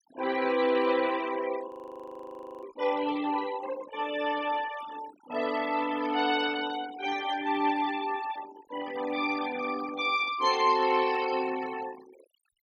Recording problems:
noise reduction artefacts; signal-to-artefact ratio 13 dB
frozen audio; at 1.5 s for 1 s

